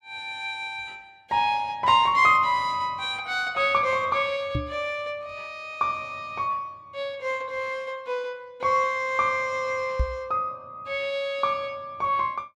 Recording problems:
microphone bump; at 4.5 s and at 10 s; peak +3 dB vs average level

